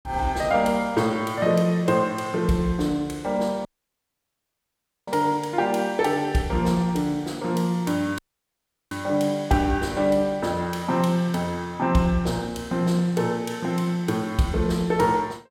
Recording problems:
audio cutting out; at 3.5 s for 1.5 s and at 8 s for 0.5 s

